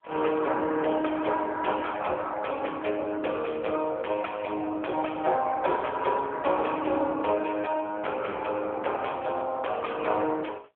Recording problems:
phone line; 320 Hz to 2.5 kHz, AMR-NB

